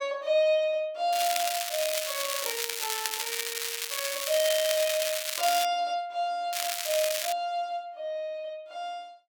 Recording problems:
crackle; from 1 to 5.5 s and at 6.5 s; loose cable, SNR 1 dB

